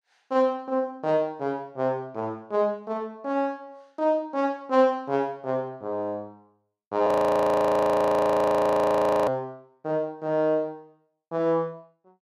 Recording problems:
audio freezing; at 7 s for 2 s

